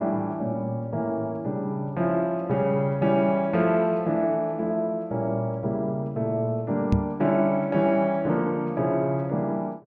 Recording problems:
microphone thump; at 7 s; peak +5 dB vs average level

